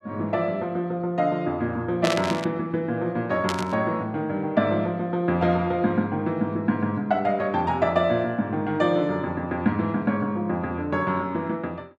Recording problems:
static burst; at 2 s and at 3.5 s; peak +2 dB vs average level

